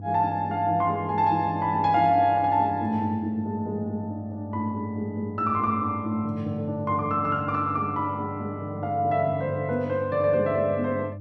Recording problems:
hum; 50 Hz, harmonics up to 500 Hz, SNR 13 dB

